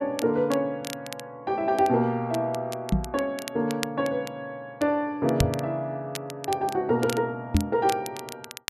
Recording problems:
crackle; vinyl, SNR 13 dB
microphone bump; at 3 s, at 5.5 s and at 7.5 s; peak +9 dB vs average level

